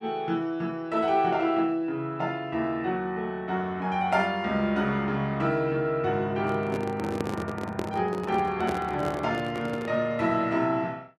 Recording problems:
microphone handling noise; from 6.5 to 10 s; peak +1 dB vs average level

